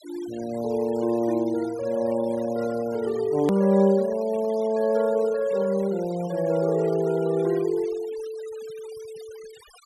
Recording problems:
noise reduction artefacts; signal-to-artefact ratio 21 dB
hard cut with a click; at 3.5 s

